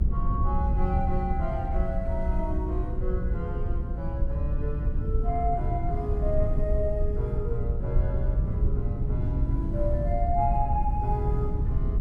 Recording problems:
rumble; below 80 Hz, SNR -3 dB

